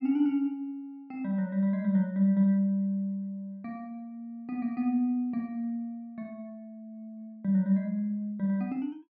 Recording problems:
treble cut off; nothing above 8 kHz

